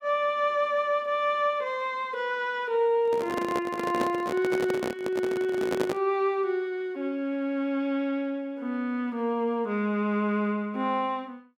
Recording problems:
microphone handling noise; from 3 to 6 s; peak +2 dB vs average level

